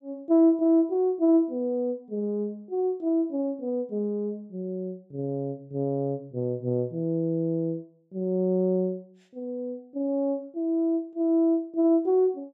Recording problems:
none

